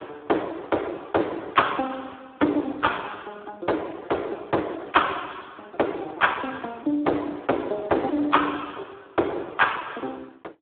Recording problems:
telephone audio; 260 Hz to 3.4 kHz, Speex

